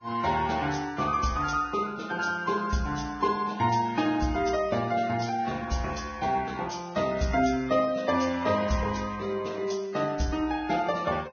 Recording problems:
lossy codec; Vorbis, log-spectral distance 4 dB, nothing above 6.5 kHz

